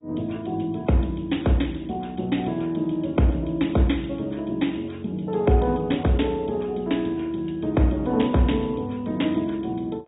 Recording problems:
treble cut off; nothing above 3.8 kHz
lossy codec; MP2, log-spectral distance 4 dB

